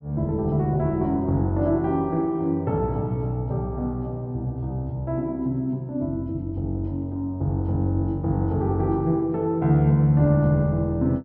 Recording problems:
treble missing; nothing above 5.6 kHz

